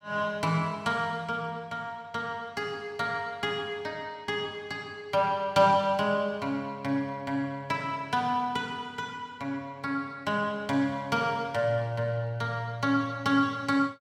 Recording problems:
none

